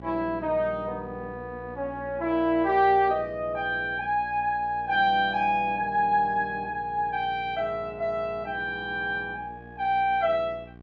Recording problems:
hum; 60 Hz, harmonics up to 1.6 kHz, SNR 20 dB

